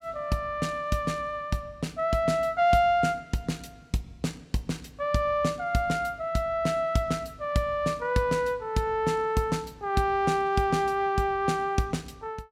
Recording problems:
none

